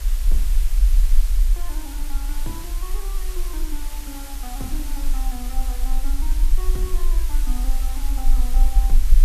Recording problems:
background hiss; slope 0 dB per octave, SNR -1 dB
low-frequency rumble; below 40 Hz, strongest tone 18 Hz, SNR -14 dB

